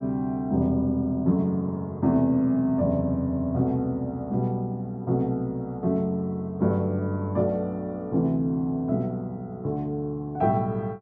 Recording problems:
none

